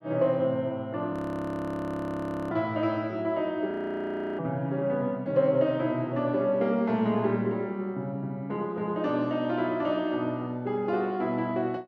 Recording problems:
audio freezing; at 1 s for 1.5 s and at 3.5 s for 0.5 s

